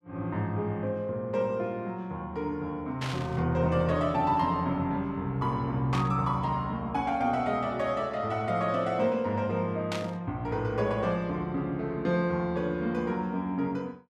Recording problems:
burst of static; at 3 s, at 6 s and at 10 s; peak -2 dB vs average level

